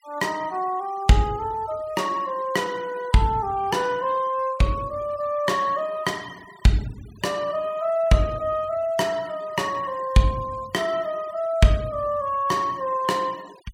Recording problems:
noise reduction artefacts; signal-to-artefact ratio 23 dB

